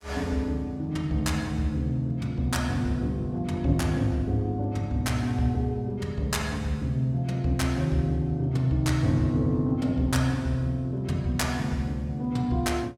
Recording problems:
none

